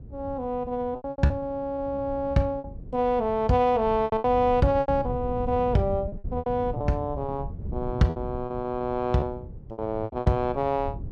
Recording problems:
wind on the microphone; below 140 Hz, SNR 12 dB
packet loss; 12% of the sound replaced, filled with repeated pitch periods

